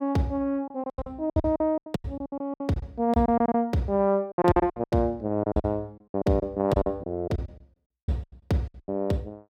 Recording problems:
lost packets; 19% of the sound replaced, filled with silence

